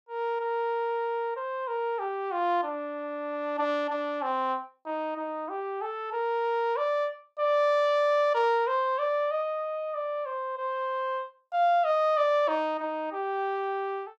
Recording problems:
none

